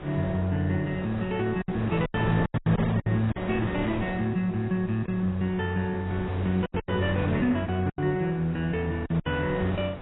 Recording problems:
lossy codec; AAC, log-spectral distance 2 dB, nothing above 11.3 kHz
wind noise; below 840 Hz, SNR 10 dB
lost packets; 8% of the sound replaced, filled with silence

